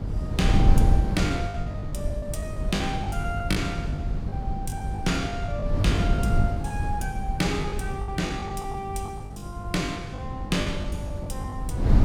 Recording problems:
hum; 50 Hz, harmonics up to 500 Hz, SNR 10 dB
wind on the microphone; below 120 Hz, SNR -2 dB
lost packets; 12% of the sound replaced, filled with the last packet

